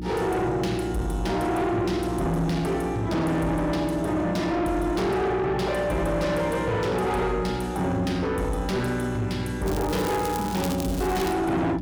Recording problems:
distorted audio; soft clipping, signal-to-distortion ratio 8 dB
electrical hum; 60 Hz, harmonics up to 360 Hz, SNR 8 dB
crackling; from 9.5 s on; loose cable, SNR 13 dB

